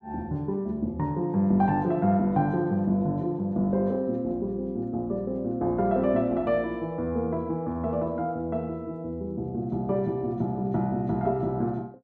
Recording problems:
none

